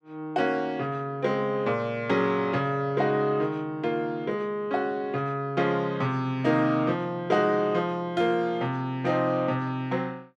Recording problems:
none

